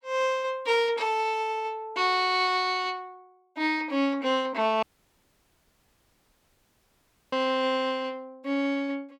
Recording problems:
dropout; at 5 s for 2.5 s

